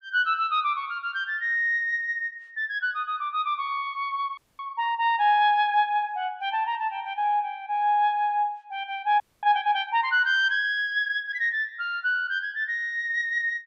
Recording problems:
audio freezing; at 4.5 s and at 9 s

